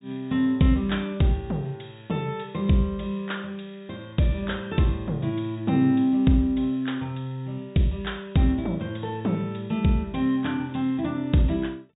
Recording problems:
low-pass filter; nothing above 4 kHz

